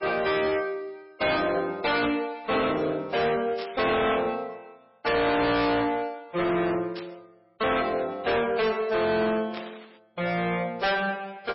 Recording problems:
codec artefacts; MP3, log-spectral distance 4 dB, nothing above 5 kHz
distortion; hard clipping, signal-to-distortion ratio 6 dB
static burst; 4 times, first at 2 s; peak -9 dB vs average level

